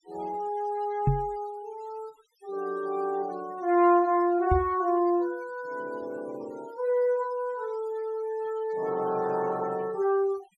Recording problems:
noise reduction artefacts; signal-to-artefact ratio 24 dB
microphone bump; at 1 s and at 4.5 s; peak +7 dB vs average level

